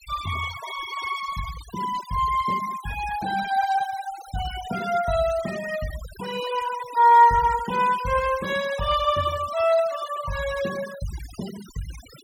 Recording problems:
noise reduction artefacts; signal-to-artefact ratio 16 dB

